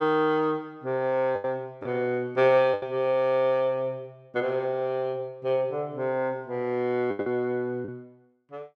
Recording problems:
lost packets; 4% of the sound replaced, filled with the last packet

